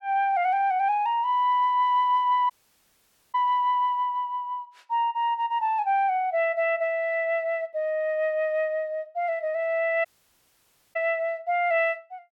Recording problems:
audio cutting out; at 2.5 s for 1 s and at 10 s for 1 s

